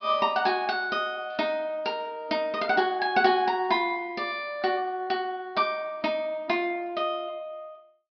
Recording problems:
treble cut off; nothing above 5.5 kHz

